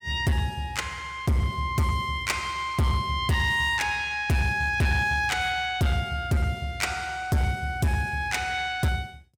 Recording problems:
distorted audio; hard clipping, signal-to-distortion ratio 10 dB

